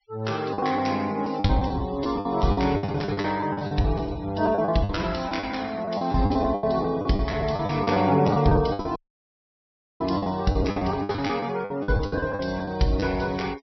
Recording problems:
low-pass filter; nothing above 5.8 kHz
noise reduction artefacts; signal-to-artefact ratio 22 dB
lost packets; 17% of the sound replaced, filled with the last packet
audio cutting out; at 9 s for 1 s

